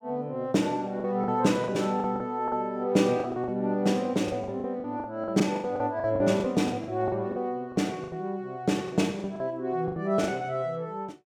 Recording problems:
packet loss; 13% of the sound replaced, filled with the last packet

